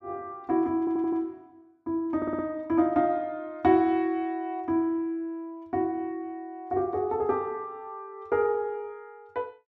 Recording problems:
stutter; at 1 s and at 2 s

